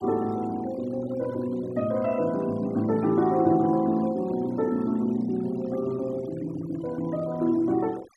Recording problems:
denoising artefacts; signal-to-artefact ratio 22 dB

